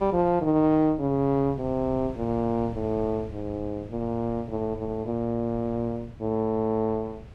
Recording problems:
wind noise; below 180 Hz, SNR 17 dB

